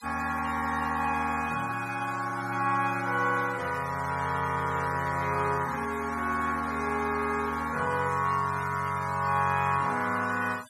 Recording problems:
noise reduction artefacts; signal-to-artefact ratio 16 dB

